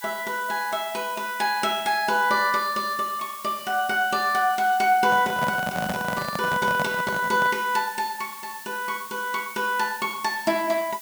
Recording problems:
background hiss; slope +3 dB per octave, SNR 15 dB
handling noise; from 5 to 7.5 s; peak -1 dB vs average level

